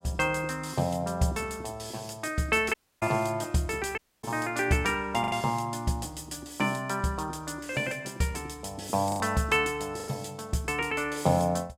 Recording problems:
lost packets; 2% of the sound replaced, filled with the last packet
audio cutting out; at 2.5 s and at 4 s

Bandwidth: 16 kHz